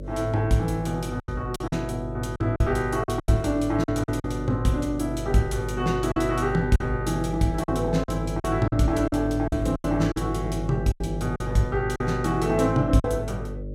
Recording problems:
hum; 50 Hz, harmonics up to 600 Hz, SNR 8 dB
packet loss; 8% of the sound replaced, filled with silence

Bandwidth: 16 kHz